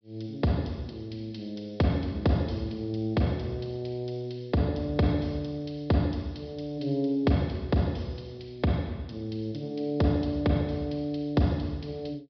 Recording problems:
treble cut off; nothing above 5.5 kHz

